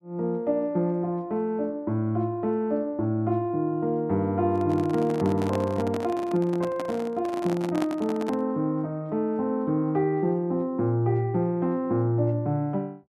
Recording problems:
microphone handling noise; from 4.5 to 8.5 s; peak -3 dB vs average level

